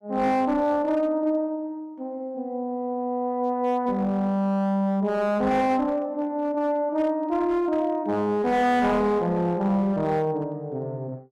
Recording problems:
distortion; hard clipping, uneven, signal-to-distortion ratio 10 dB

